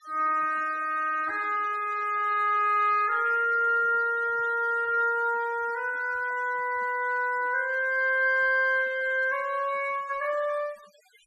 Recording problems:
noise reduction artefacts; signal-to-artefact ratio 25 dB

